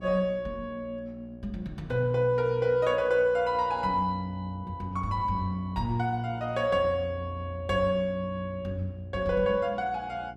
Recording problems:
hum; 60 Hz, harmonics up to 780 Hz, SNR 20 dB

